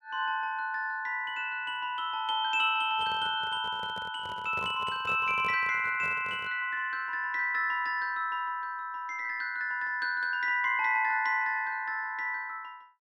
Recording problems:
handling noise; from 3 to 6.5 s; peak -9 dB vs average level

